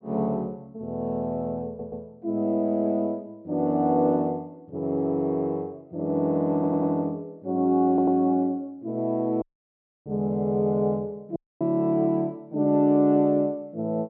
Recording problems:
audio stuttering; at 1.5 s, at 6.5 s and at 8 s
audio cutting out; at 9.5 s for 0.5 s and at 11 s

